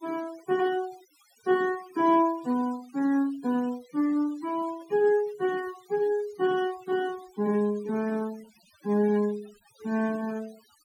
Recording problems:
denoising artefacts; signal-to-artefact ratio 22 dB

